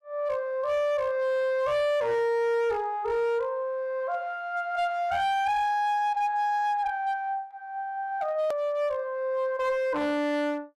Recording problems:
distorted audio; hard clipping, uneven, signal-to-distortion ratio 11 dB
hard cut with a click; at 8.5 s

